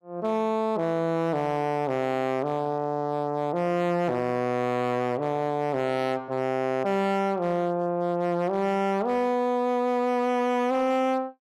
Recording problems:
distorted audio; hard clipping, uneven, signal-to-distortion ratio 11 dB

